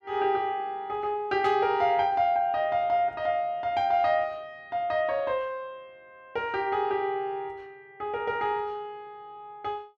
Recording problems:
static burst; at 1.5 s; peak -12 dB vs average level

